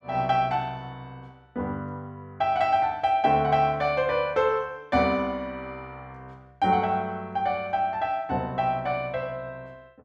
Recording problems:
none

